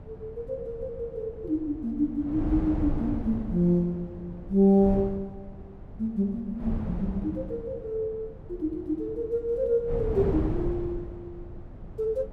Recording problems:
wind noise; below 210 Hz, SNR 9 dB

